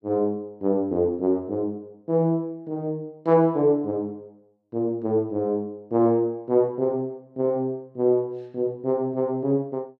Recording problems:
none

